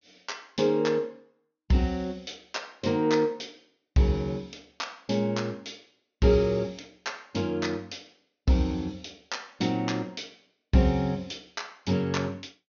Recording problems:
treble missing; nothing above 6.6 kHz

